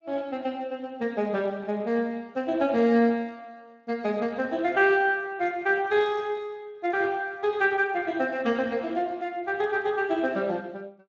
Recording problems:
codec artefacts; Speex, log-spectral distance 3 dB

